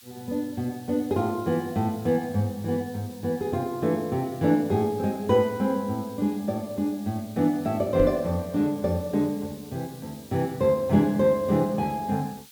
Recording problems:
background hiss; slope +3 dB per octave, SNR 22 dB
microphone bump; at 8 s; peak 0 dB vs average level

